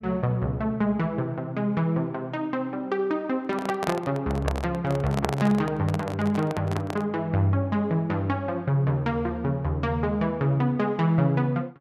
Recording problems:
handling noise; from 3.5 to 7 s; peak +3 dB vs average level

